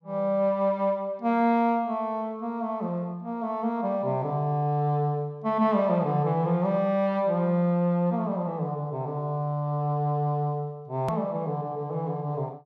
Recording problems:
edit click; at 11 s

